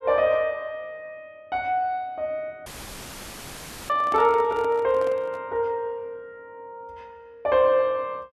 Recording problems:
dropout; at 2.5 s for 1 s; filled with static
handling noise; from 4 to 5.5 s; peak -8 dB vs average level

